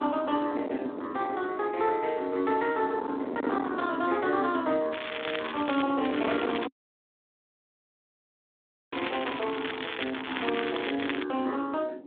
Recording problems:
phone line; 240 Hz to 3.7 kHz, Speex
distorted audio; hard clipping, signal-to-distortion ratio 15 dB
wind noise; below 520 Hz, SNR 11 dB
crackling; at 5 s and from 6 to 11 s; loose cable, SNR 6 dB
audio cutting out; at 6.5 s for 2.5 s

